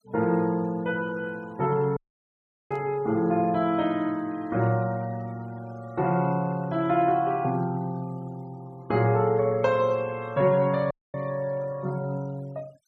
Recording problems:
denoising artefacts; signal-to-artefact ratio 25 dB
dropout; at 2 s for 0.5 s and at 11 s
burst of static; at 2.5 s; peak -27 dB vs average level

